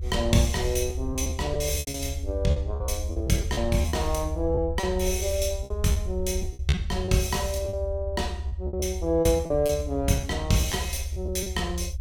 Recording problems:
rumble; below 78 Hz, SNR 5 dB
lost packets; 11% of the sound replaced, filled with repeated pitch periods

